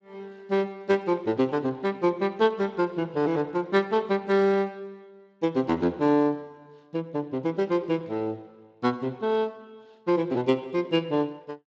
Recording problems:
lossy compression; Speex, log-spectral distance 2 dB

